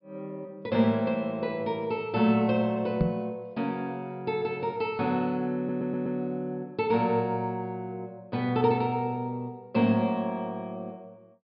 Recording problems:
treble missing; nothing above 5.5 kHz
knock on the microphone; at 3 s; peak +7 dB vs average level
stutter; at 5.5 s

